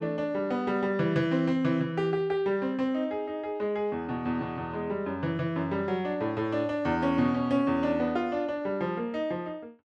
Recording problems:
none

